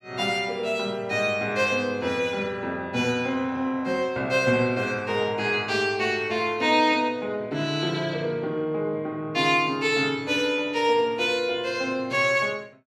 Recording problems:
none

